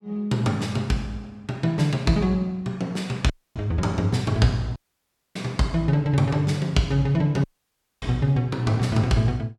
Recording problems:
dropout; at 3.5 s, at 5 s for 0.5 s and at 7.5 s for 0.5 s

